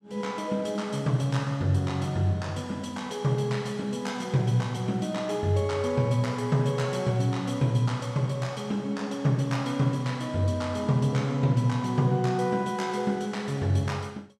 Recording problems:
none

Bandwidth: 14.5 kHz